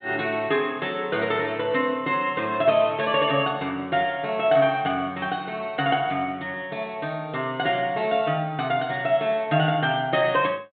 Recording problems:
treble missing; nothing above 4 kHz

